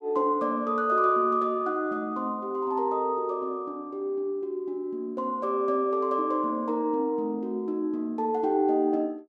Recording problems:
none

